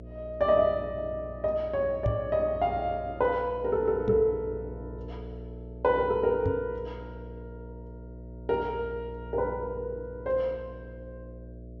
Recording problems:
treble cut off; nothing above 7 kHz
mains hum; 60 Hz, harmonics up to 660 Hz, SNR 14 dB
knock on the microphone; at 2 s, at 4 s and at 6.5 s; peak +3 dB vs average level

